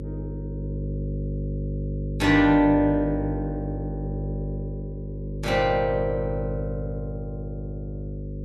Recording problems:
hum; 50 Hz, harmonics up to 550 Hz, SNR 7 dB

